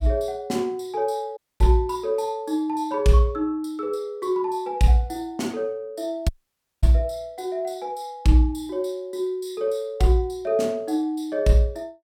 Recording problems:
audio cutting out; at 1.5 s and at 6.5 s for 0.5 s

